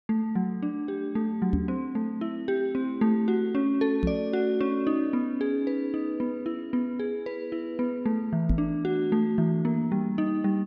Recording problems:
microphone bump; at 1.5 s, at 4 s and at 8.5 s; peak +4 dB vs average level

